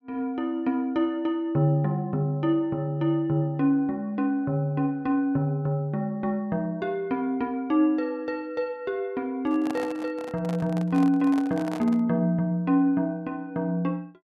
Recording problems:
microphone handling noise; from 9.5 to 12 s; peak -6 dB vs average level

